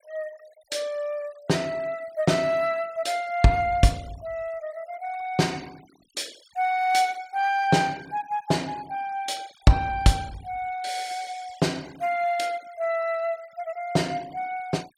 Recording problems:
denoising artefacts; signal-to-artefact ratio 24 dB

